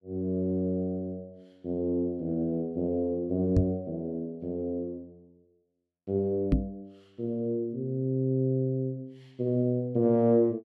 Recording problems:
knock on the microphone; at 3.5 s and at 6.5 s; peak +8 dB vs average level

